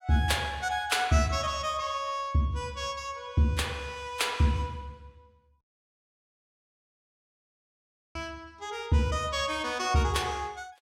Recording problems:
audio cutting out; at 5.5 s for 2.5 s

